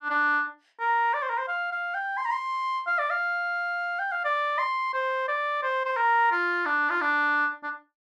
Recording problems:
none

